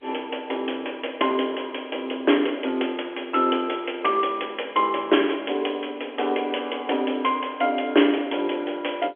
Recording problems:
phone line; 240 Hz to 3.4 kHz, G.711

